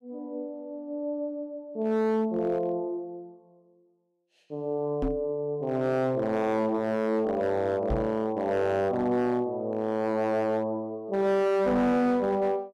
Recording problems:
distortion; hard clipping, signal-to-distortion ratio 10 dB
knock on the microphone; at 5 s and at 8 s; peak +1 dB vs average level

